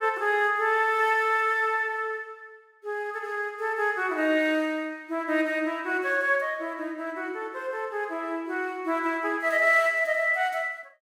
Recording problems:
none

